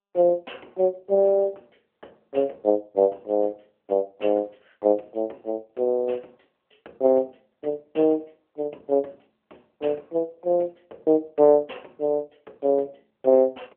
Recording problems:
telephone audio; 280 Hz to 3.3 kHz, AMR-NB

